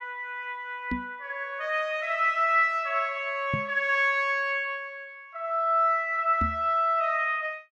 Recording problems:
microphone thump; at 1 s, at 3.5 s and at 6.5 s; peak -1 dB vs average level

